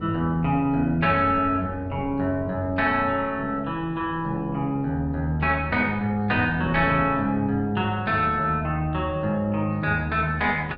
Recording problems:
wind on the microphone; below 360 Hz, SNR 17 dB

